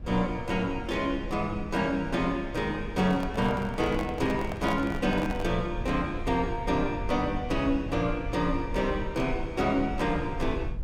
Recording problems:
low-frequency rumble; below 82 Hz, SNR 10 dB
handling noise; from 3 to 5.5 s; peak -3 dB vs average level

